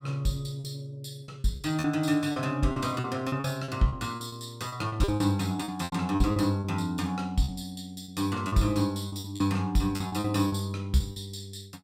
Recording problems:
packet loss; 12% of the sound replaced, filled with repeated pitch periods

